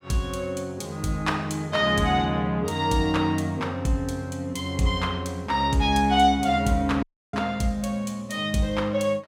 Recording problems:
audio cutting out; at 7 s

